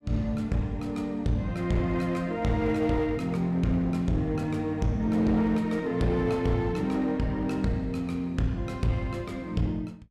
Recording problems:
distorted audio; hard clipping, uneven, signal-to-distortion ratio 10 dB

